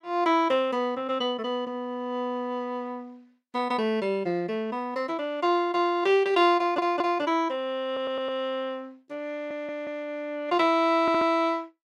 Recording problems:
audio stuttering; 4 times, first at 6.5 s

